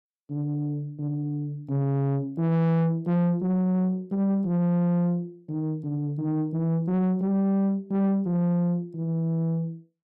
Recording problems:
distortion; soft clipping, signal-to-distortion ratio 10 dB

